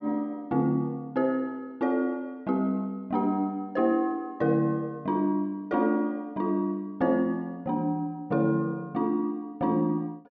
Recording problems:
none

